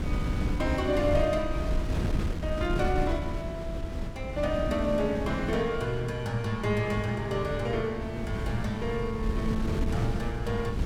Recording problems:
wind on the microphone; below 180 Hz, SNR 3 dB

